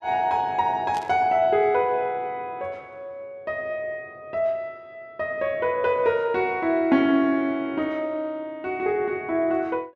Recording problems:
burst of static; at 1 s; peak -11 dB vs average level

